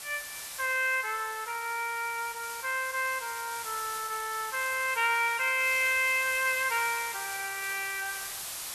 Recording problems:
background hiss; slope +2 dB per octave, SNR 9 dB

